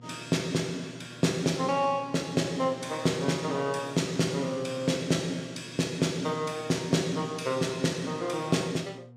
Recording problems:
electrical hum; 60 Hz, harmonics up to 720 Hz, SNR 21 dB

